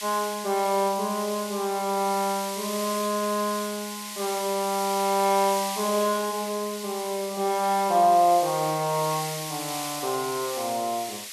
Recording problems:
hiss; SNR 8 dB

